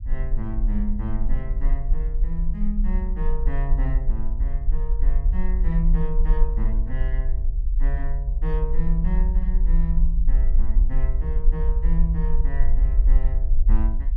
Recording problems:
rumble; below 44 Hz, SNR -8 dB

